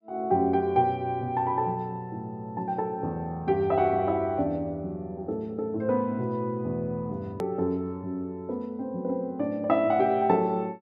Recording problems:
hard cut with a click; at 7.5 s

